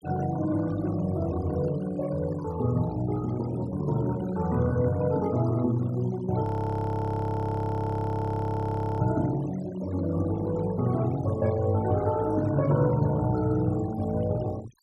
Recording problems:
noise reduction artefacts; signal-to-artefact ratio 20 dB
audio freezing; at 6.5 s for 2.5 s

